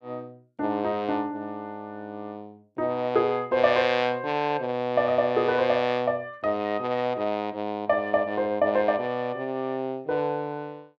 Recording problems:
none

